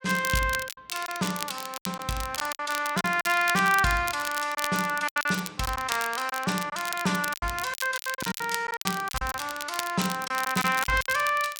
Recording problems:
crackle; vinyl, SNR 9 dB
packet loss; 11% of the sound replaced, filled with silence

